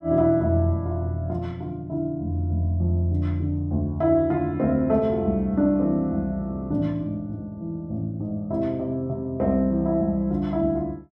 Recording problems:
none

